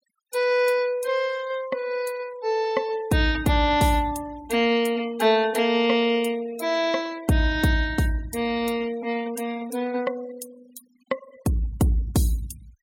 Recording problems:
denoising artefacts; signal-to-artefact ratio 21 dB

